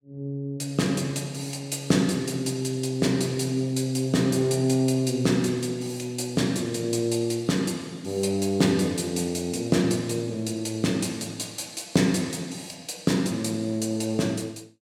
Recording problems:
none

